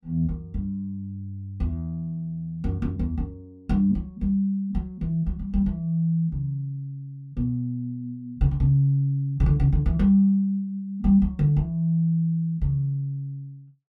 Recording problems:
none

